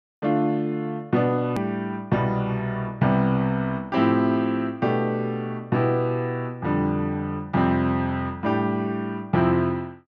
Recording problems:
edit click; at 1.5 s

